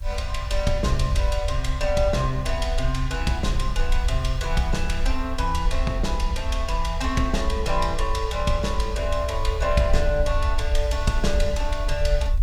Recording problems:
hiss; slope 0 dB per octave, SNR 30 dB
low-frequency rumble; below 60 Hz, SNR 1 dB

